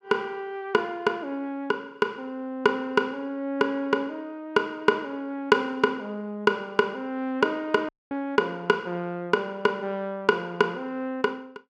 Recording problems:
dropout; at 8 s

